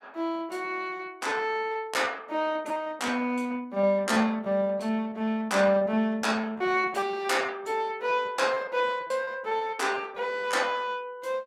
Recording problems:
packet loss; 12% of the sound replaced, filled with repeated pitch periods

